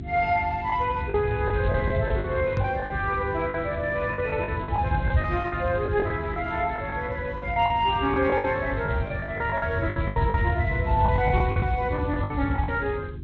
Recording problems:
codec artefacts; Speex, log-spectral distance 2 dB
hum; 50 Hz, harmonics up to 400 Hz, SNR 14 dB
low-frequency rumble; below 120 Hz, SNR 4 dB
lost packets; 12% of the sound replaced, filled with the last packet
knock on the microphone; at 2.5 s; peak +3 dB vs average level

